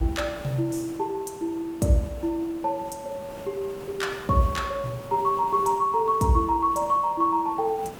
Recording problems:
hiss; slope -6 dB per octave, SNR 18 dB

